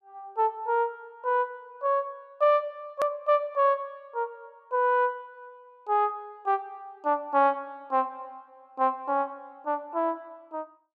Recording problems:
edit click; at 3 s

